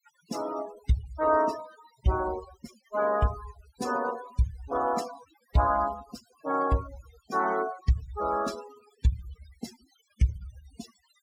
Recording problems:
noise reduction artefacts; signal-to-artefact ratio 14 dB

